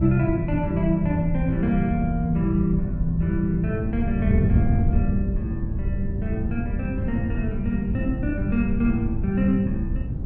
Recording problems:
wind noise; below 130 Hz, SNR 2 dB

